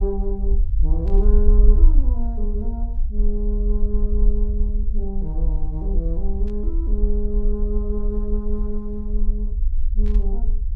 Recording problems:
rumble; below 46 Hz, SNR -8 dB
static burst; at 1 s, at 6.5 s and at 10 s; peak -14 dB vs average level

